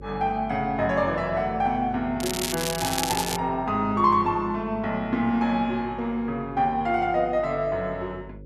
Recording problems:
hum; 50 Hz, harmonics up to 550 Hz, SNR 18 dB
crackling; from 2 to 3.5 s; loose cable, SNR 4 dB

